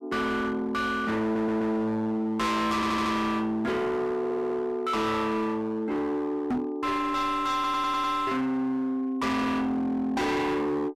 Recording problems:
distortion; hard clipping, signal-to-distortion ratio 7 dB
audio stuttering; 4 times, first at 1 s
microphone bump; at 6.5 s; peak +2 dB vs average level

